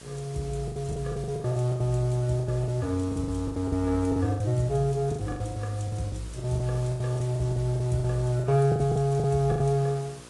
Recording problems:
lossy codec; AAC, log-spectral distance 4 dB, nothing above 10.4 kHz
hum; 60 Hz, harmonics up to 1.8 kHz, SNR 25 dB
background hiss; SNR 21 dB
packet loss; 18% of the sound replaced, filled with the last packet

